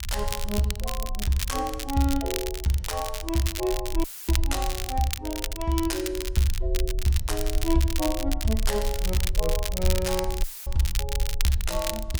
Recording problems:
rumble; below 52 Hz, SNR 5 dB
crackle; vinyl, SNR 6 dB
audio cutting out; at 4 s and at 10 s; filled with static

